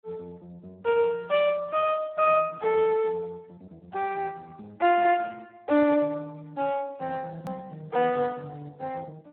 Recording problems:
phone line; 240 Hz to 3.1 kHz, Speex
hard cut with a click; at 7.5 s

